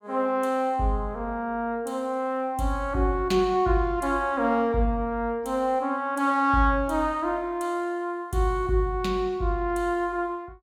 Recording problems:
none

